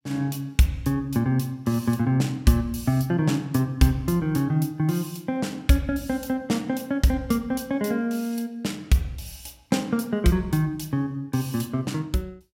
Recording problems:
none

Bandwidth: 16 kHz